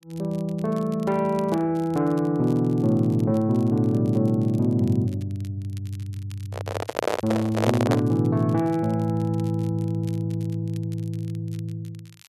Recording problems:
crackling; vinyl, SNR 27 dB
handling noise; from 6.5 to 8 s; peak +4 dB vs average level

